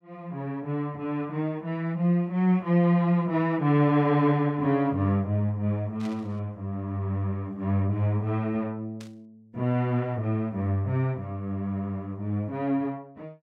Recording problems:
burst of static; at 6 s and at 9 s; peak -15 dB vs average level

